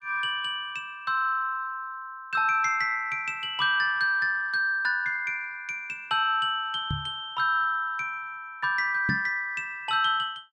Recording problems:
knock on the microphone; at 7 s and at 9 s; peak 0 dB vs average level

